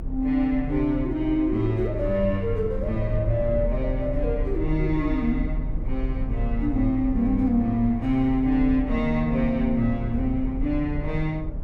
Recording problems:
rumble; below 70 Hz, strongest tone 38 Hz, SNR 7 dB

